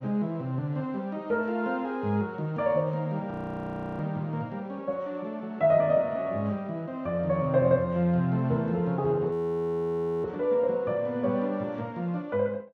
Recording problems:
audio freezing; at 3.5 s for 0.5 s and at 9.5 s for 1 s

